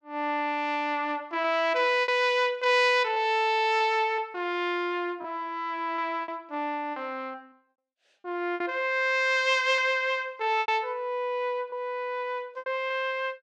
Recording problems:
packet loss; 5% of the sound replaced, filled with repeated pitch periods

